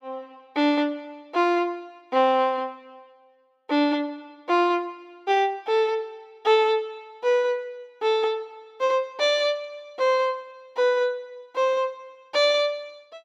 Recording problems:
none

